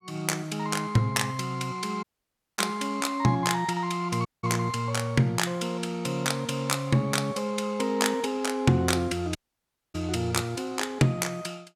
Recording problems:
dropout; at 2 s for 0.5 s, at 4.5 s and at 9.5 s for 0.5 s

